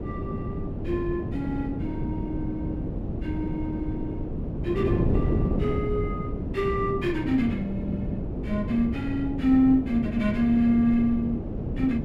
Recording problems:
wind on the microphone; below 290 Hz, SNR 4 dB

